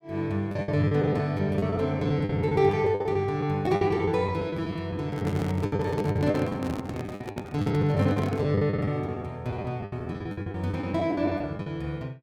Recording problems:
packet loss; 17% of the sound replaced, filled with the last packet
handling noise; from 5 to 8.5 s; peak -3 dB vs average level

